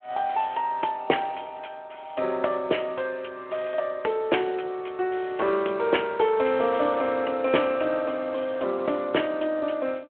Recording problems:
telephone audio; 280 Hz to 3.2 kHz, Speex

